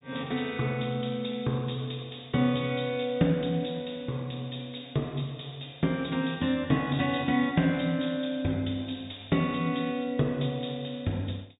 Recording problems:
low-pass filter; nothing above 4 kHz

